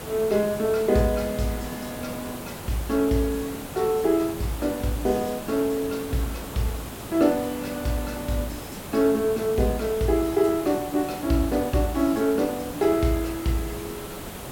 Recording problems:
background hiss; slope -5 dB per octave, SNR 11 dB

